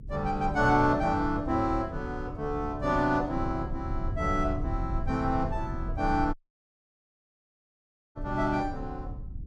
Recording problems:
low-frequency rumble; below 98 Hz, SNR 8 dB
dropout; at 6.5 s for 2 s

